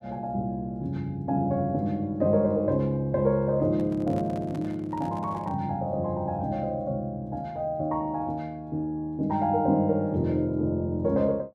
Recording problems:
microphone handling noise; from 3.5 to 5.5 s; peak -11 dB vs average level

